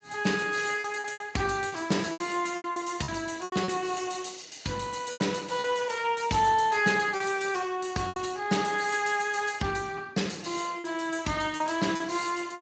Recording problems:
lossy compression; Speex, log-spectral distance 6 dB, nothing above 7.8 kHz
packet loss; 7% of the sound replaced, filled with repeated pitch periods

